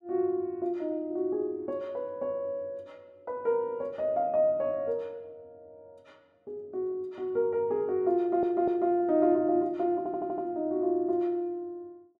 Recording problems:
stutter; at 8 s and at 10 s

